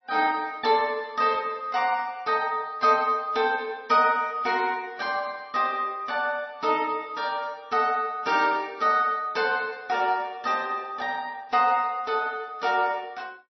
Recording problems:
lossy compression; MP3, log-spectral distance 2 dB, nothing above 5.7 kHz

